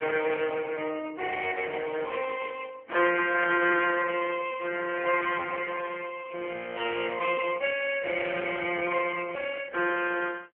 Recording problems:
phone line; 300 Hz to 3.1 kHz, AMR-NB

